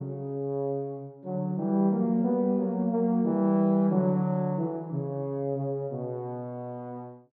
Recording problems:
none

